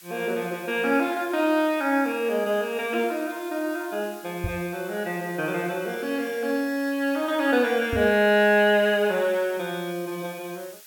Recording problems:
background hiss; SNR 21 dB
microphone thump; at 4.5 s and at 8 s; peak -1 dB vs average level

